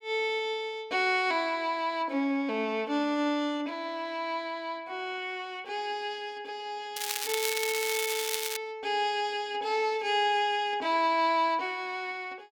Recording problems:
crackle; from 7 to 8.5 s; loose cable, SNR 2 dB

